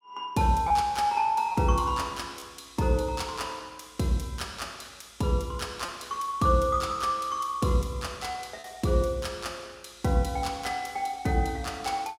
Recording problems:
lost packets; 1.4% of the sound replaced, filled with repeated pitch periods

